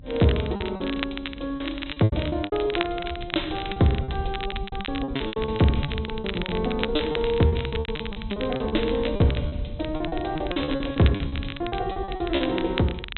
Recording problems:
treble missing; nothing above 4 kHz
low-frequency rumble; below 120 Hz, SNR 12 dB
crackling; vinyl, SNR 10 dB
lost packets; 19% of the sound replaced, filled with repeated pitch periods

